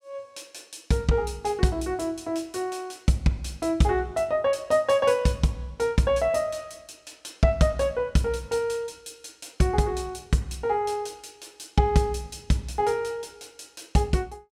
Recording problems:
none

